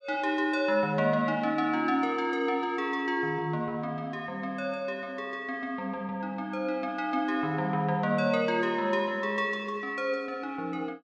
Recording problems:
none

